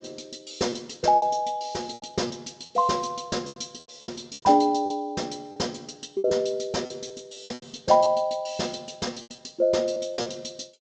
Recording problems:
treble cut off; nothing above 8 kHz
lost packets; 10% of the sound replaced, filled with repeated pitch periods

